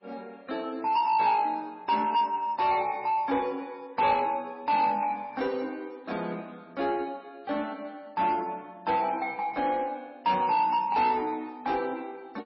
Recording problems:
lossy compression; MP3, log-spectral distance 2 dB, nothing above 4.9 kHz
distorted audio; soft clipping, signal-to-distortion ratio 11 dB

